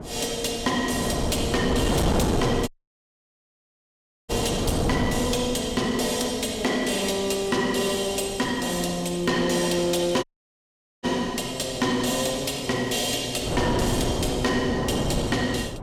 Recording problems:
distortion; soft clipping, signal-to-distortion ratio 12 dB
wind noise; below 550 Hz, SNR 4 dB
audio cutting out; at 2.5 s for 1.5 s and at 10 s for 1 s

